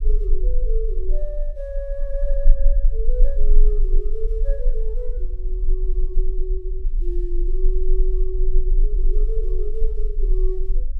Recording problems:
low-frequency rumble; below 32 Hz, strongest tone 20 Hz, SNR -10 dB

